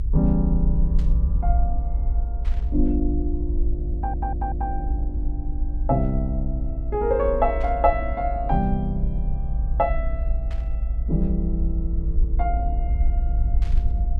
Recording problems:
low-frequency rumble; below 56 Hz, SNR 0 dB
static burst; 5 times, first at 1 s; peak -14 dB vs average level
audio stuttering; at 4 s

